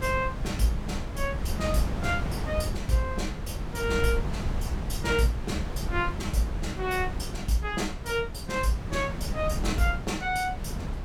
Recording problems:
wind noise; below 180 Hz, SNR 4 dB

